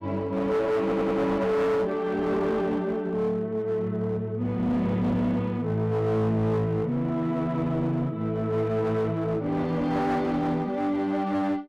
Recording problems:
distortion; hard clipping, uneven, signal-to-distortion ratio 10 dB
stutter; at 1 s

